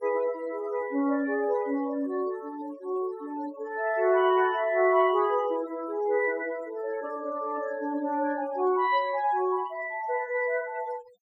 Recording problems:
noise reduction artefacts; signal-to-artefact ratio 20 dB

